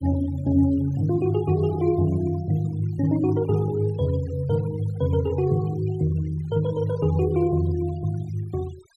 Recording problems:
noise reduction artefacts; signal-to-artefact ratio 22 dB

